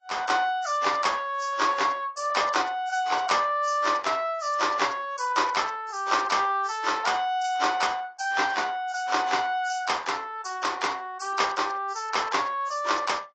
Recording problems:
lossy compression; AAC, log-spectral distance 4 dB, nothing above 7.3 kHz

